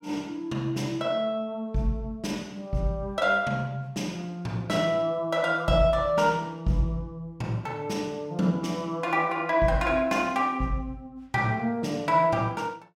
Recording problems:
none

